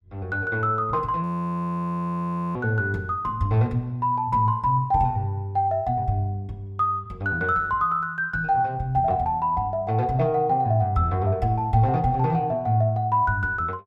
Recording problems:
frozen audio; at 1 s for 1.5 s

